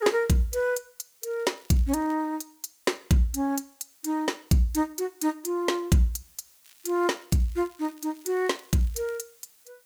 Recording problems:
hiss; slope +1 dB per octave, SNR 30 dB
crackling; at 1.5 s and from 6.5 to 9 s; loose cable, SNR 29 dB

